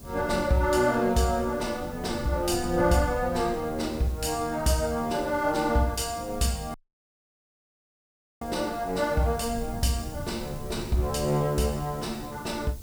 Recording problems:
hiss; slope +4 dB per octave, SNR 22 dB
wind on the microphone; below 160 Hz, SNR 14 dB
dropout; at 6.5 s for 1.5 s

